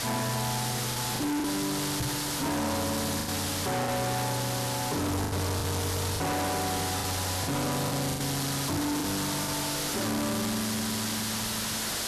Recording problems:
distortion; hard clipping, signal-to-distortion ratio 5 dB
background hiss; slope -1 dB per octave, SNR 0 dB
lost packets; 6% of the sound replaced, filled with the last packet
microphone thump; at 2 s; peak +3 dB vs average level

